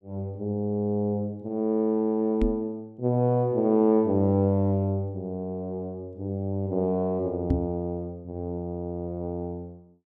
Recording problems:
microphone bump; at 2.5 s and at 7.5 s; peak +5 dB vs average level

